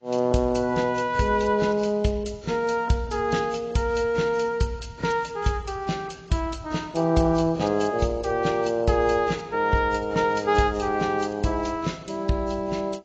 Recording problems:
lossy codec; AAC, log-spectral distance 3 dB, nothing above 7.6 kHz

